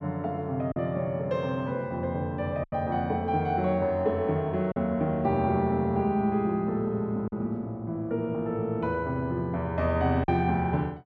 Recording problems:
lost packets; 2% of the sound replaced, filled with silence

